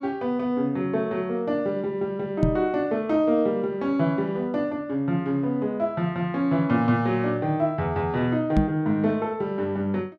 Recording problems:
microphone thump; at 2.5 s and at 8.5 s; peak +6 dB vs average level

